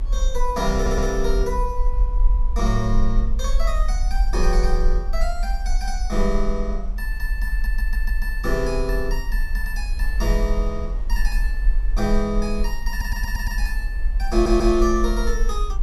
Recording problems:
low-frequency rumble; below 42 Hz, SNR -1 dB
wind on the microphone; below 690 Hz, SNR 22 dB
audio stuttering; 4 times, first at 1 s

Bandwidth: 15.5 kHz